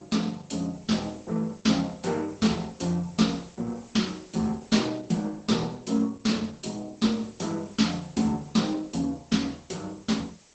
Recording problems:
codec artefacts; Opus, log-spectral distance 10 dB, nothing above 7.8 kHz
background hiss; SNR 28 dB

